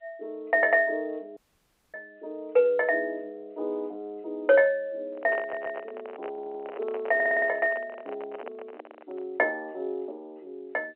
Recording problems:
phone line; 320 Hz to 3.4 kHz, G.711
audio cutting out; at 1.5 s for 0.5 s
handling noise; from 5 to 9.5 s; peak -5 dB vs average level
stutter; at 5.5 s, at 6.5 s and at 7 s

